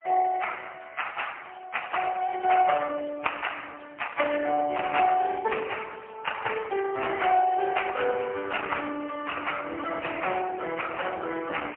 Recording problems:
telephone audio; 280 Hz to 3.2 kHz, AMR-NB, then MP3

